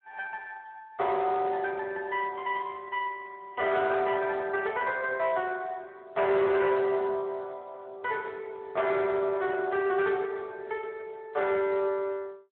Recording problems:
phone line; 300 Hz to 3.4 kHz, Speex
distortion; hard clipping, signal-to-distortion ratio 12 dB

